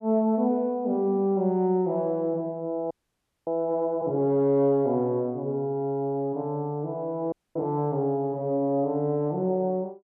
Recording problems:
frozen audio; at 3 s for 0.5 s and at 7.5 s

